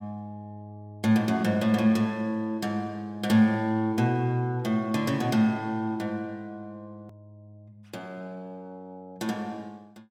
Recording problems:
hard cut with a click; at 7 s

